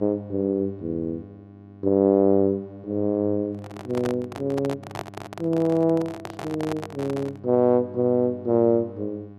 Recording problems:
hum; 50 Hz, harmonics up to 1.1 kHz, SNR 19 dB
handling noise; from 3.5 to 7.5 s; peak -5 dB vs average level

